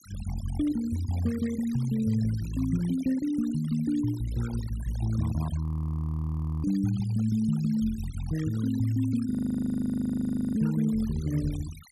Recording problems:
noise reduction artefacts; signal-to-artefact ratio 19 dB
frozen audio; at 5.5 s for 1 s and at 9.5 s for 1.5 s

